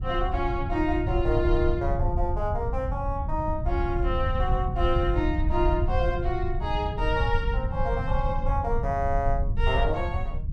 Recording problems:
low-frequency rumble; below 86 Hz, SNR 1 dB

